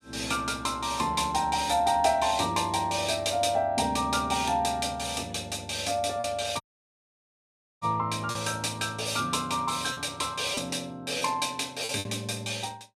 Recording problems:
packet loss; 2% of the sound replaced, filled with repeated pitch periods
audio cutting out; at 6.5 s for 1 s

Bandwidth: 14 kHz